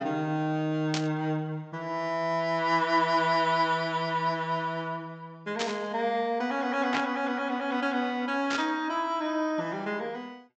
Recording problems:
treble cut off; nothing above 8 kHz
burst of static; 4 times, first at 1 s; peak +1 dB vs average level

